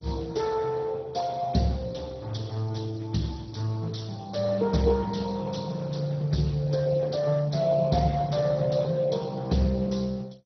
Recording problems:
lossy codec; Speex, then MP2, log-spectral distance 4 dB, nothing above 6 kHz

